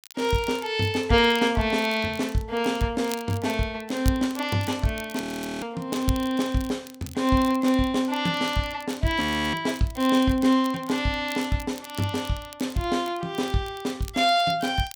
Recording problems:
crackle; vinyl, SNR 19 dB
frozen audio; at 5 s and at 9 s

